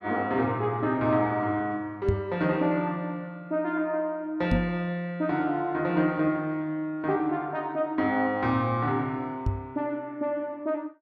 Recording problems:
microphone bump; at 2 s, at 4.5 s and at 9.5 s; peak +5 dB vs average level

